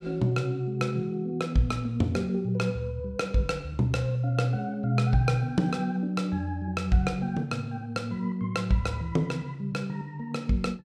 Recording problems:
none

